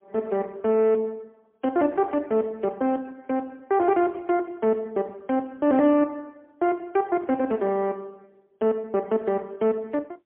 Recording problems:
phone line; 220 Hz to 3.1 kHz, AMR-NB, then MP3

